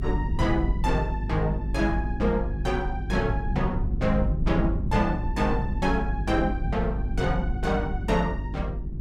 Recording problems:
hum; 50 Hz, harmonics up to 400 Hz, SNR 4 dB
low-frequency rumble; below 130 Hz, SNR 5 dB

